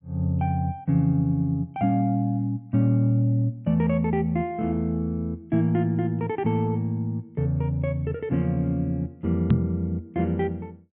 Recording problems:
low-pass filter; nothing above 4 kHz
microphone thump; at 9.5 s; peak +7 dB vs average level

